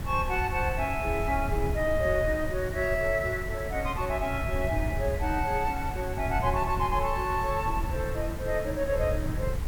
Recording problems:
hiss; slope -5 dB per octave, SNR 13 dB
wind noise; below 100 Hz, SNR 6 dB

